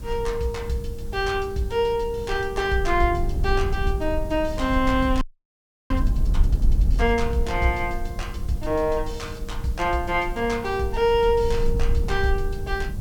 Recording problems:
hum; 50 Hz, harmonics up to 600 Hz, SNR 18 dB
background hiss; SNR 25 dB
low-frequency rumble; below 62 Hz, SNR 5 dB
frozen audio; at 5 s for 0.5 s

